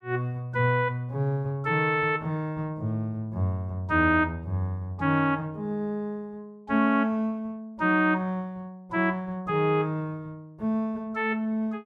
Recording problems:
none

